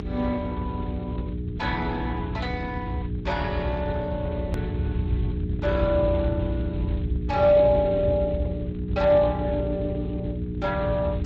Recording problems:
lossy codec; MP3, then Speex, log-spectral distance 2 dB
hum; 60 Hz, harmonics up to 420 Hz, SNR 6 dB
rumble; below 110 Hz, SNR 6 dB
hard cut with a click; at 4.5 s

